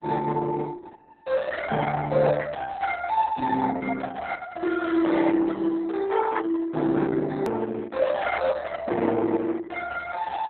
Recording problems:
codec artefacts; Opus, then Opus, log-spectral distance 4 dB, nothing above 13.1 kHz
hard cut with a click; at 7.5 s

